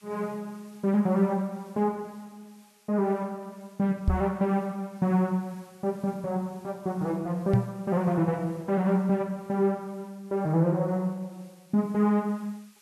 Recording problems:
background hiss; slope +2 dB per octave, SNR 30 dB
microphone thump; at 4 s and at 7.5 s; peak +8 dB vs average level

